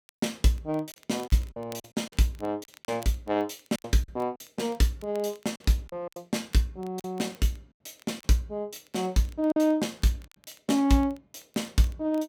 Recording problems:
crackle; vinyl, SNR 26 dB
packet loss; 7% of the sound replaced, filled with silence

